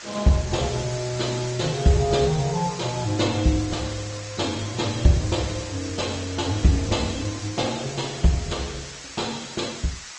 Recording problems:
lossy codec; G.722, then Opus, log-spectral distance 16 dB, nothing above 8 kHz
background hiss; SNR 14 dB

